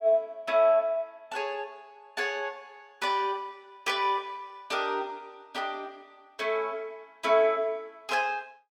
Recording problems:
none

